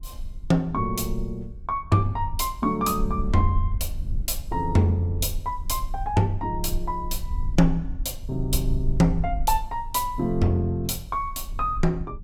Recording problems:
rumble; below 52 Hz, SNR 8 dB

